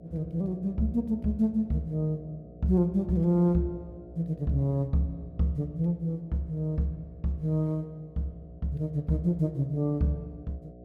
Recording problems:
hum; 60 Hz, harmonics up to 720 Hz, SNR 21 dB

